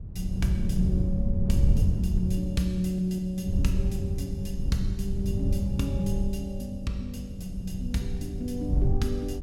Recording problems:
wind on the microphone; below 100 Hz, SNR -1 dB

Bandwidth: 17.5 kHz